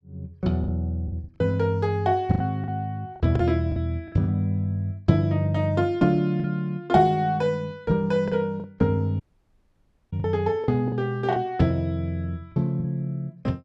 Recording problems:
packet loss; 7% of the sound replaced, filled with the last packet
audio cutting out; at 9 s for 1 s

